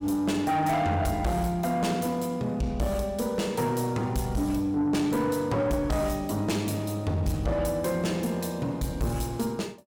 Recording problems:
distorted audio; soft clipping, signal-to-distortion ratio 10 dB

